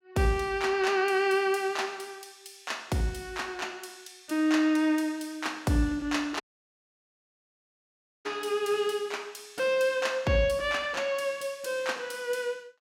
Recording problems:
audio cutting out; at 6.5 s for 2 s

